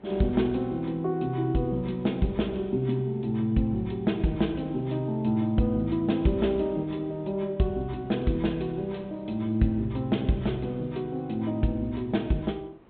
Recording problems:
treble missing; nothing above 4 kHz
background hiss; SNR 27 dB

